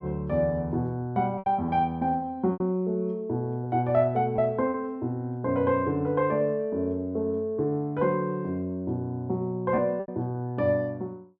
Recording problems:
packet loss; 3% of the sound replaced, filled with repeated pitch periods

